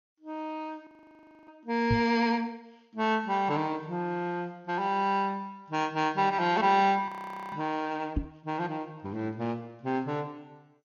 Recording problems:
lossy compression; MP3, then MP2, log-spectral distance 2 dB
frozen audio; at 1 s for 0.5 s and at 7 s
knock on the microphone; at 2 s and at 8 s; peak +5 dB vs average level

